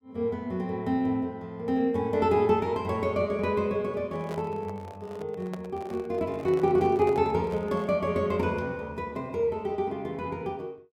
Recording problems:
microphone handling noise; from 4 to 8 s; peak -7 dB vs average level

